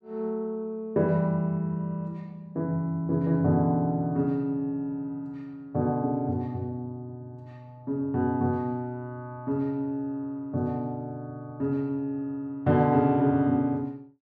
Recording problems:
none

